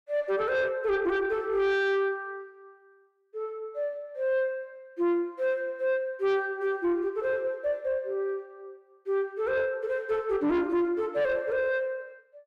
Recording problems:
distorted audio; soft clipping, signal-to-distortion ratio 12 dB

